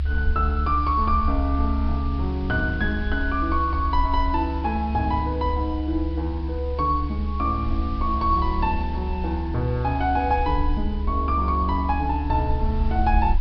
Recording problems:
treble cut off; nothing above 5.5 kHz
background hiss; SNR 23 dB
rumble; below 72 Hz, strongest tone 70 Hz, SNR 2 dB

